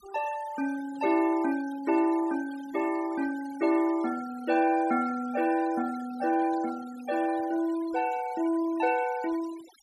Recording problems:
denoising artefacts; signal-to-artefact ratio 19 dB

